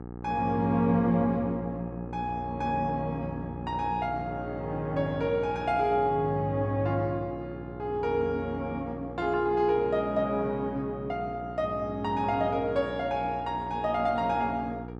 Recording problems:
hum; 60 Hz, harmonics up to 1.4 kHz, SNR 11 dB

